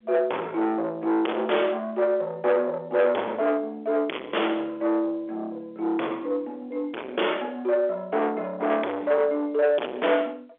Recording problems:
phone line; 340 Hz to 3.5 kHz, G.711
distorted audio; soft clipping, signal-to-distortion ratio 7 dB

